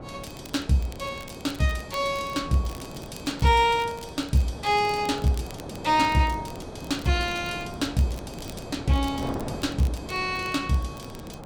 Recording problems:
wind on the microphone; below 640 Hz, SNR 12 dB
crackling; vinyl, SNR 22 dB

